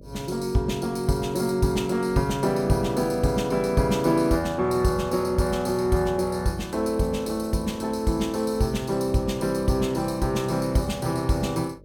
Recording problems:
hum; 50 Hz, harmonics up to 600 Hz, SNR 23 dB

